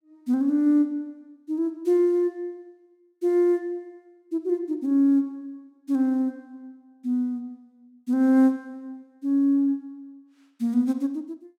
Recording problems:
none

